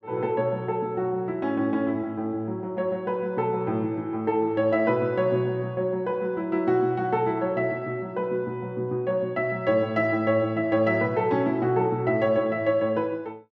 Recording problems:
none

